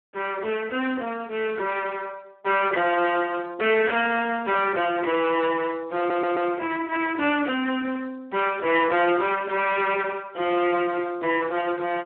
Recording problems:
phone line; 260 Hz to 3.2 kHz, Speex
distortion; soft clipping, signal-to-distortion ratio 11 dB
audio stuttering; at 6 s
static burst; at 8 s and at 11 s; peak -16 dB vs average level

